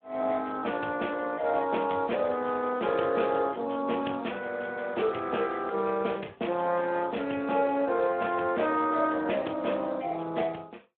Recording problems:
phone line; 190 Hz to 3.3 kHz, Speex

